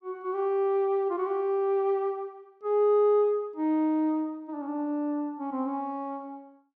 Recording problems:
none

